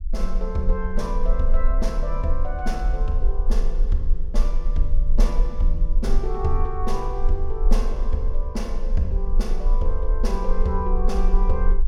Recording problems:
rumble; below 34 Hz, strongest tone 24 Hz, SNR -3 dB

